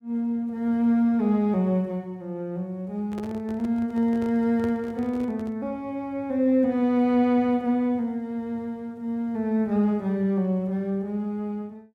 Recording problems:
handling noise; from 3 to 5.5 s; peak -8 dB vs average level

